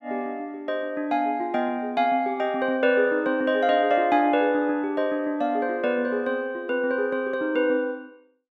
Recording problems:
none

